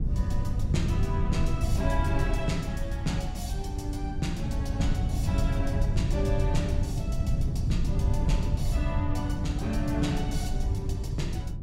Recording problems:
wind on the microphone; below 120 Hz, SNR -4 dB

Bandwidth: 16 kHz